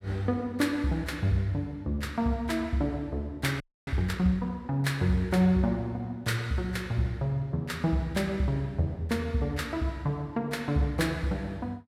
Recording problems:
audio freezing; at 3.5 s

